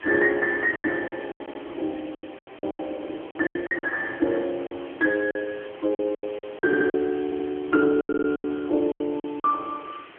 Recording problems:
telephone audio; 260 Hz to 2.8 kHz, AMR-NB
background hiss; SNR 21 dB
wind noise; below 550 Hz, SNR 20 dB
lost packets; 14% of the sound replaced, filled with silence
stutter; 4 times, first at 1.5 s

